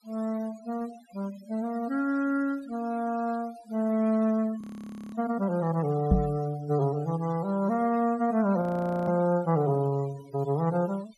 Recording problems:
noise reduction artefacts; signal-to-artefact ratio 21 dB
audio freezing; at 4.5 s for 0.5 s and at 8.5 s
microphone bump; at 6 s; peak +9 dB vs average level

